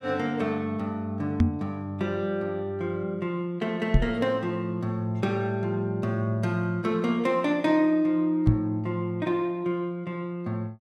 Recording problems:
knock on the microphone; at 1.5 s, at 4 s and at 8.5 s; peak +10 dB vs average level

